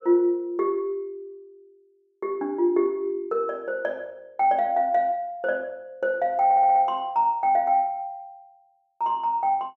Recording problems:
audio stuttering; at 6.5 s

